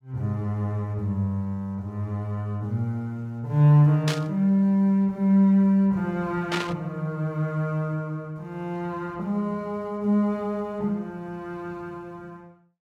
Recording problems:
burst of static; at 4 s and at 6.5 s; peak 0 dB vs average level

